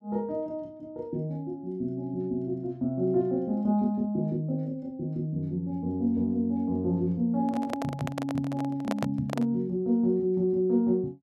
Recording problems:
microphone handling noise; from 7.5 to 9.5 s; peak 0 dB vs average level

